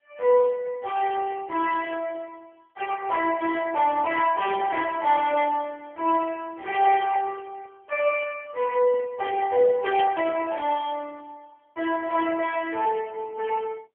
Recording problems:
phone line; 320 Hz to 3.2 kHz, AMR-NB

